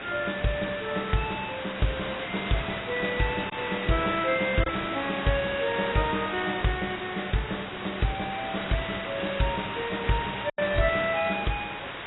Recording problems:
codec artefacts; AAC, log-spectral distance 18 dB, nothing above 3.8 kHz
hiss; SNR 6 dB
lost packets; 1% of the sound replaced, filled with silence

